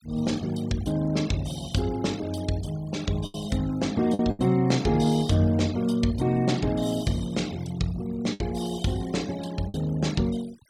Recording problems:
noise reduction artefacts; signal-to-artefact ratio 19 dB
packet loss; 3% of the sound replaced, filled with the last packet

